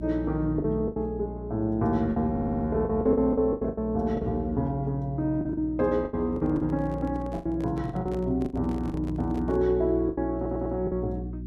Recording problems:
electrical hum; 60 Hz, harmonics up to 360 Hz, SNR 9 dB
packet loss; 11% of the sound replaced, filled with the last packet
stutter; at 2.5 s and at 10 s
handling noise; from 6 to 9.5 s; peak -9 dB vs average level

